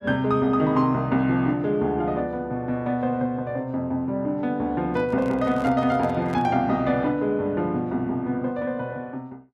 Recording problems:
microphone handling noise; from 5 to 6.5 s; peak -6 dB vs average level

